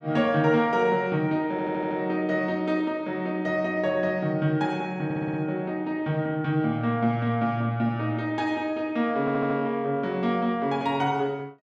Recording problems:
audio stuttering; at 1.5 s, at 5 s and at 9 s

